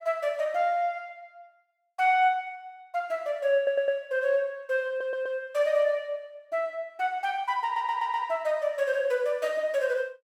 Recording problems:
stutter; at 3.5 s, at 5 s and at 7.5 s

